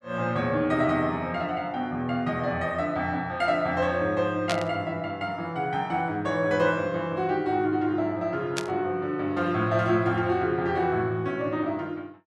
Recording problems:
static burst; at 4.5 s and at 8.5 s; peak +1 dB vs average level

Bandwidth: 12 kHz